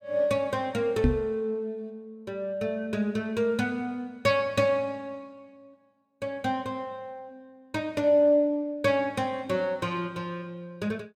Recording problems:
knock on the microphone; at 1 s; peak +8 dB vs average level

